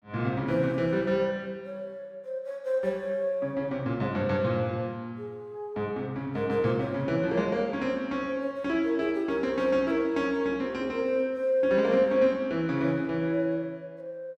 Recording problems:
none

